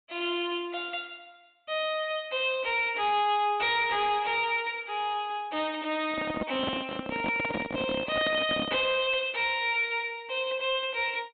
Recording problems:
treble cut off; nothing above 4 kHz
distorted audio; hard clipping, signal-to-distortion ratio 11 dB
handling noise; from 6 to 9 s; peak 0 dB vs average level

